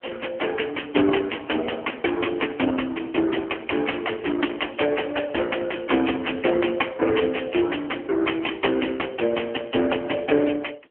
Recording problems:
telephone audio; 240 Hz to 3.1 kHz, AMR-NB

